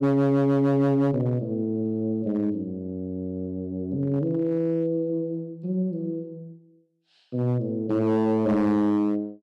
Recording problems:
distortion; hard clipping, signal-to-distortion ratio 11 dB

